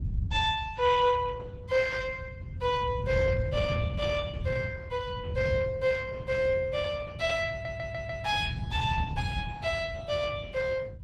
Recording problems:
codec artefacts; Opus, log-spectral distance 3 dB, nothing above 18.9 kHz
rumble; below 120 Hz, SNR 5 dB
audio stuttering; at 7.5 s

